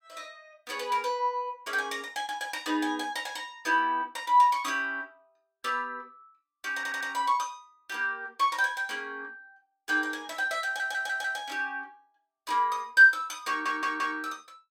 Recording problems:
audio stuttering; at 7 s, at 11 s and at 13 s

